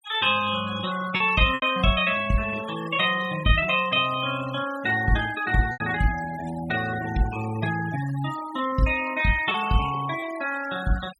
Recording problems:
denoising artefacts; signal-to-artefact ratio 14 dB
lost packets; 3% of the sound replaced, filled with repeated pitch periods

